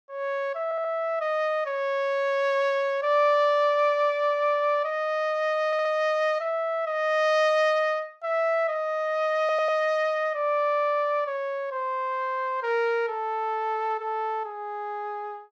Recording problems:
stutter; at 0.5 s, at 5.5 s and at 9.5 s

